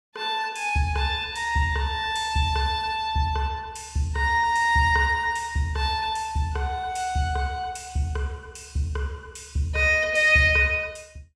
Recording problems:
none

